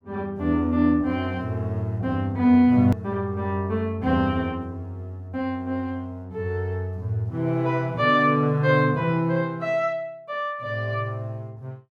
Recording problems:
edit click; at 3 s

